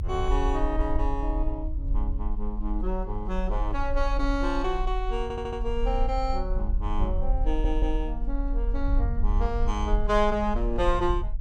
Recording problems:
rumble; below 42 Hz, SNR 0 dB
audio stuttering; at 5 s and at 7.5 s

